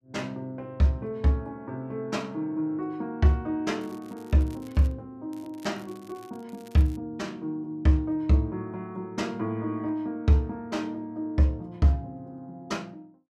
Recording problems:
crackle; from 4 to 5 s and from 5.5 to 7 s; loose cable, SNR 27 dB

